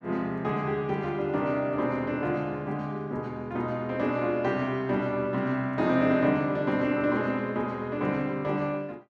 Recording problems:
none

